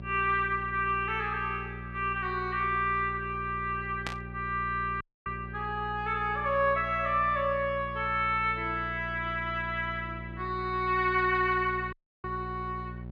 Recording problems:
hum; 60 Hz, harmonics up to 780 Hz, SNR 12 dB
static burst; at 4 s; peak -2 dB vs average level
audio cutting out; at 5 s and at 12 s

